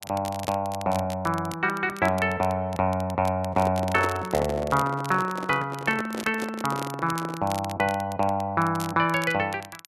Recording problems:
crackle; vinyl, SNR 17 dB
handling noise; from 3.5 to 7.5 s; peak -2 dB vs average level

